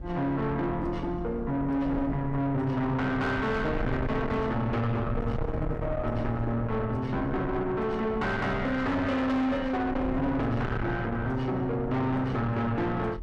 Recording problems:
distortion; soft clipping, signal-to-distortion ratio 7 dB
wind on the microphone; below 350 Hz, SNR 8 dB

